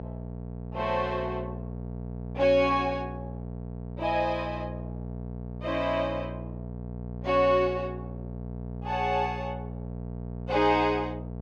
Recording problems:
hum; 60 Hz, harmonics up to 900 Hz, SNR 10 dB

